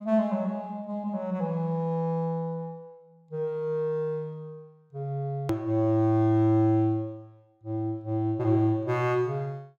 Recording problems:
click at an edit; at 5.5 s

